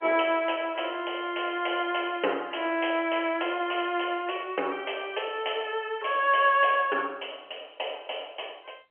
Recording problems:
phone line; 320 Hz to 3.2 kHz, G.711

